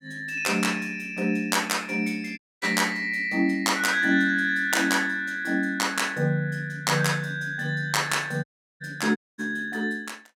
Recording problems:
audio cutting out; at 2.5 s, at 8.5 s and at 9 s

